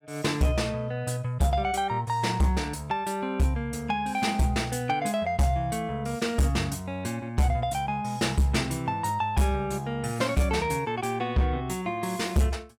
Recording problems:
distorted audio; hard clipping, signal-to-distortion ratio 10 dB

